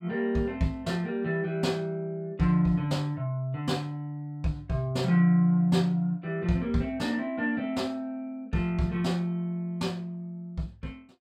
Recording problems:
none

